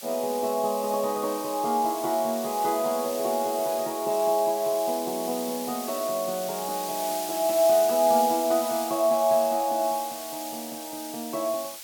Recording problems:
hiss; slope +3 dB per octave, SNR 10 dB

